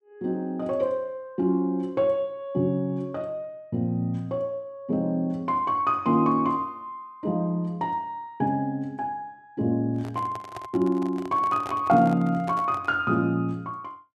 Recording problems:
handling noise; from 10 to 13 s; peak -6 dB vs average level

